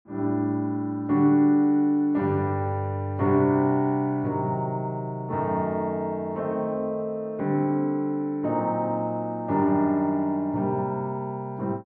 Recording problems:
none

